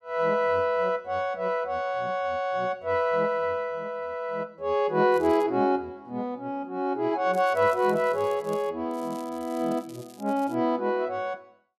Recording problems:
crackle; at 5 s, from 7.5 to 8.5 s and from 9 to 11 s; loose cable, SNR 25 dB

